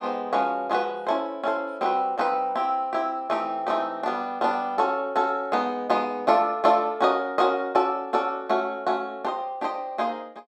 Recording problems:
none

